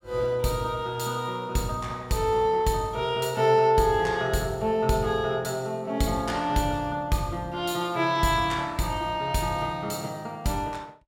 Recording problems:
none

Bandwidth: 17.5 kHz